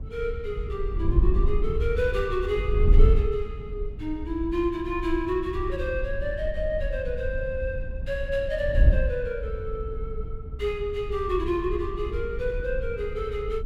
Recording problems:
wind noise; below 66 Hz, SNR 1 dB

